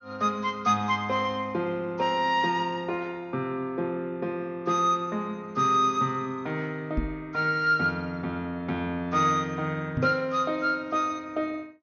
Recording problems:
treble cut off; nothing above 6.6 kHz
knock on the microphone; at 7 s and at 10 s; peak +2 dB vs average level

